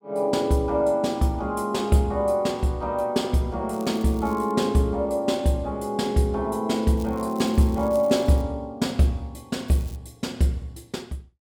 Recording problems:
crackle; at 3.5 s, from 7 to 8.5 s and at 9.5 s; loose cable, SNR 24 dB

